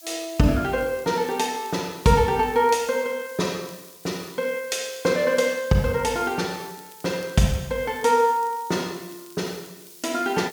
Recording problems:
hiss; slope +5 dB per octave, SNR 20 dB
crackling; vinyl, SNR 30 dB

